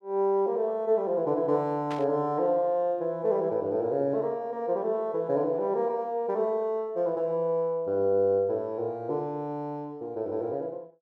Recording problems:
static burst; at 2 s; peak -9 dB vs average level

